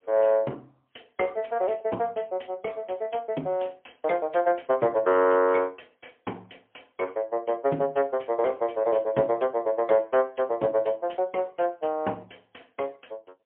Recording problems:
phone line; 220 Hz to 3.3 kHz, AMR-NB, then MP3

